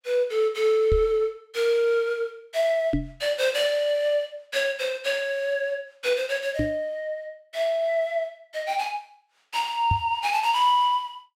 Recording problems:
microphone bump; 4 times, first at 1 s; peak +3 dB vs average level

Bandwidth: 16 kHz